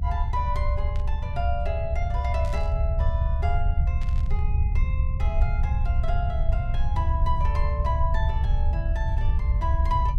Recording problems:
rumble; below 74 Hz, SNR -7 dB
burst of static; at 1 s, at 2.5 s and at 4 s; peak -9 dB vs average level

